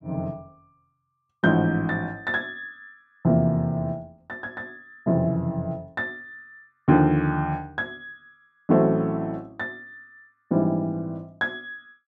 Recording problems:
none

